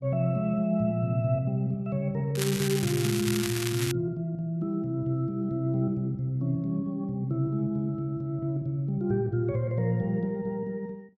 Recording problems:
crackling; from 2.5 to 4 s; loose cable, SNR 5 dB

